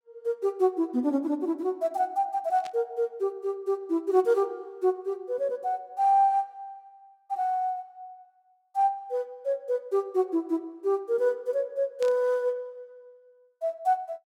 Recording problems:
burst of static; at 2.5 s and at 12 s; peak -10 dB vs average level

